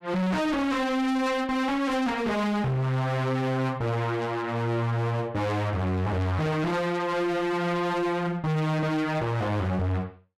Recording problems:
distorted audio; hard clipping, uneven, signal-to-distortion ratio 4 dB

